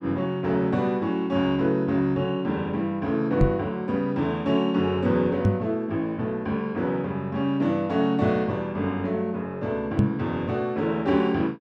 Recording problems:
microphone bump; at 3.5 s, at 5.5 s and at 10 s; peak +8 dB vs average level

